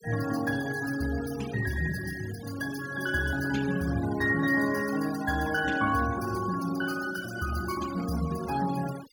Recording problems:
noise reduction artefacts; signal-to-artefact ratio 13 dB

